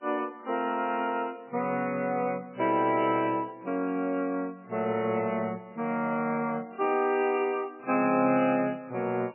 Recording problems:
codec artefacts; MP3, log-spectral distance 3 dB, nothing above 2.6 kHz

